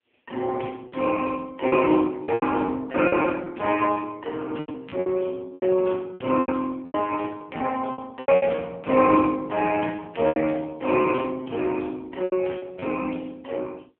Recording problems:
telephone audio; 190 Hz to 3.3 kHz, AMR-NB
lost packets; 10% of the sound replaced, filled with repeated pitch periods

